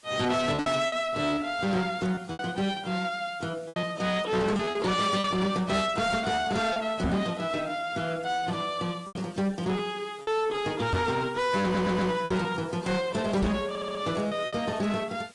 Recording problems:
lossy compression; AAC, log-spectral distance 4 dB, nothing above 10.1 kHz
distorted audio; soft clipping, signal-to-distortion ratio 8 dB
background hiss; slope +1 dB per octave, SNR 25 dB
packet loss; 6% of the sound replaced, filled with repeated pitch periods
microphone bump; at 7 s, at 11 s and at 13 s; peak +6 dB vs average level
stutter; at 12 s and at 14 s

